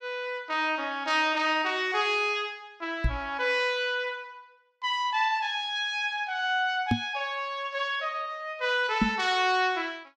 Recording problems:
microphone thump; at 3 s, at 7 s and at 9 s; peak +6 dB vs average level

